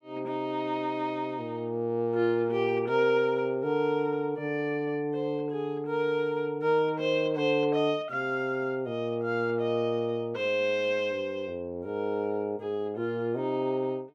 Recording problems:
none

